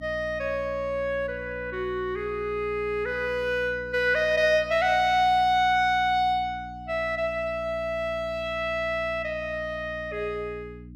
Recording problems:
hum; 60 Hz, harmonics up to 300 Hz, SNR 18 dB

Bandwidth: 15.5 kHz